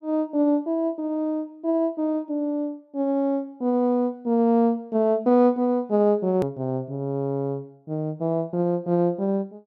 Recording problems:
click at an edit; at 6.5 s

